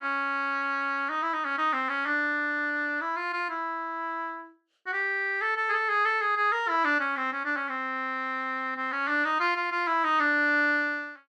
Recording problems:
none

